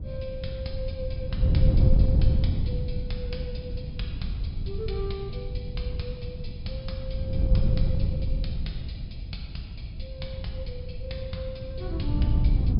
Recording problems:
low-pass filter; nothing above 5.5 kHz
wind noise; below 110 Hz, SNR -9 dB

